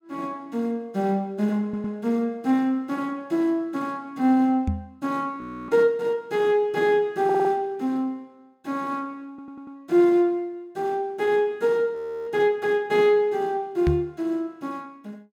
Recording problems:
audio stuttering; at 1.5 s, at 7 s and at 9.5 s
microphone bump; at 4.5 s and at 14 s; peak +4 dB vs average level
audio freezing; at 5.5 s and at 12 s

